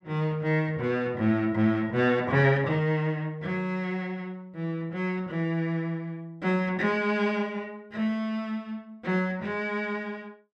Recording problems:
none

